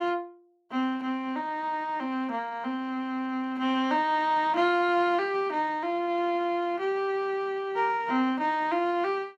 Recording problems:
none

